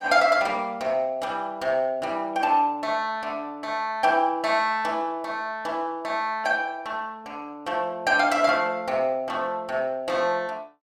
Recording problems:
none

